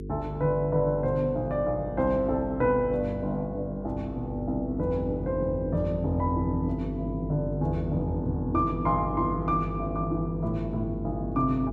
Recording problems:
hum; 50 Hz, harmonics up to 450 Hz, SNR 7 dB

